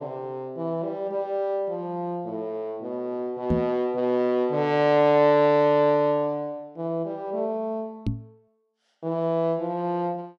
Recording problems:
microphone bump; at 3.5 s and at 8 s; peak +3 dB vs average level

